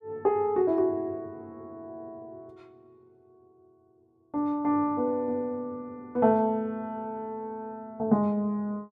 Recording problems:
none

